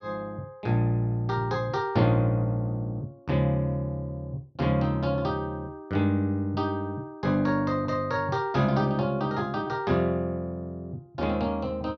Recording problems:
none

